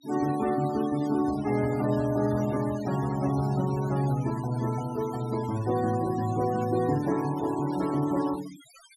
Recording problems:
noise reduction artefacts; signal-to-artefact ratio 17 dB

